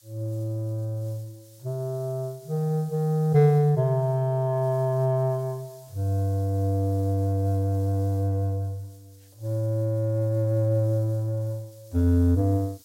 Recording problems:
background hiss; SNR 28 dB

